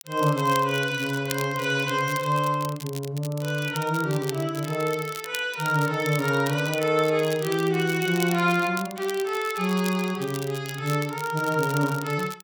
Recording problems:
crackle; vinyl, SNR 14 dB

